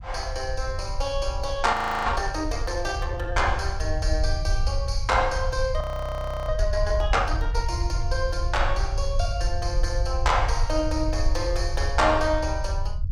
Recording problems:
rumble; below 66 Hz, SNR 2 dB
audio freezing; at 1.5 s and at 6 s for 0.5 s

